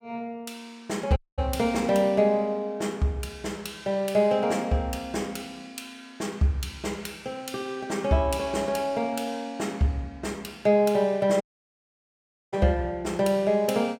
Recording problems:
audio cutting out; at 1 s and at 11 s for 1 s

